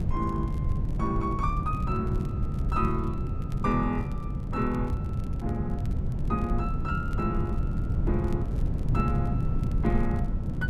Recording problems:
wind on the microphone; below 150 Hz, SNR -2 dB
crackling; vinyl, SNR 27 dB

